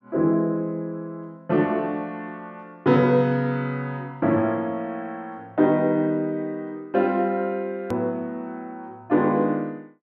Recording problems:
edit click; at 8 s

